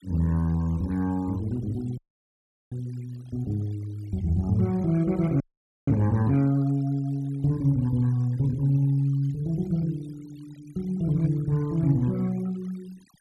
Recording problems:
noise reduction artefacts; signal-to-artefact ratio 26 dB
frozen audio; at 2 s for 0.5 s and at 5.5 s

